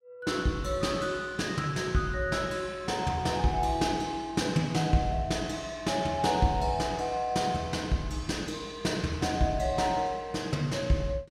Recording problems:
none

